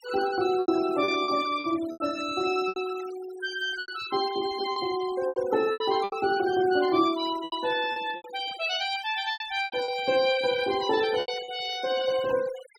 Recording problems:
denoising artefacts; signal-to-artefact ratio 18 dB
lost packets; 10% of the sound replaced, filled with repeated pitch periods

